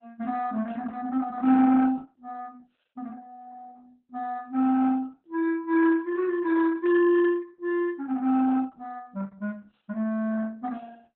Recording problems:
codec artefacts; Opus, log-spectral distance 2 dB, nothing above 3.7 kHz

